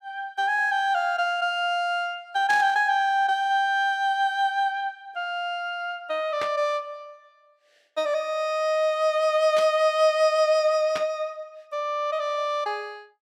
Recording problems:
static burst; 4 times, first at 2.5 s; peak -5 dB vs average level

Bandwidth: 16 kHz